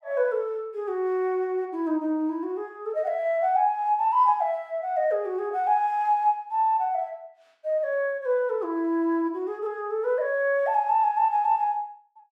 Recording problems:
none

